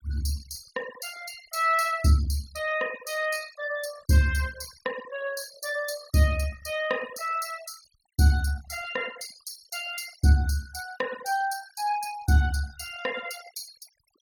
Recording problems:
denoising artefacts; signal-to-artefact ratio 16 dB

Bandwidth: 18 kHz